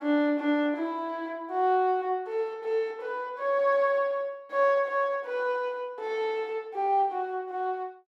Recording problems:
none

